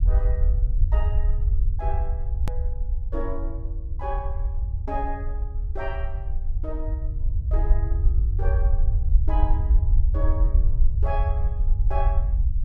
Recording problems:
rumble; below 60 Hz, SNR -10 dB
hard cut with a click; at 2.5 s

